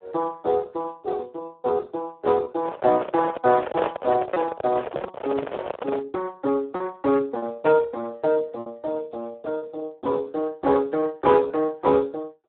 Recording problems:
phone line; 300 Hz to 2 kHz, Speex
lost packets; 3% of the sound replaced, filled with repeated pitch periods
microphone handling noise; from 2.5 to 6 s; peak +1 dB vs average level

